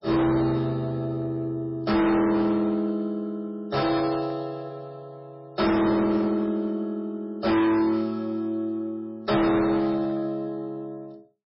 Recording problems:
codec artefacts; MP3, log-spectral distance 2 dB, nothing above 5.3 kHz
distortion; hard clipping, uneven, signal-to-distortion ratio 7 dB

